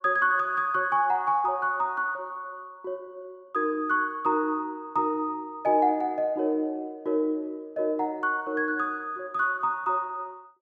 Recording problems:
none

